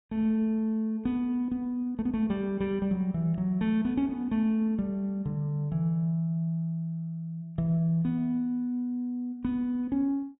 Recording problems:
treble cut off; nothing above 4 kHz

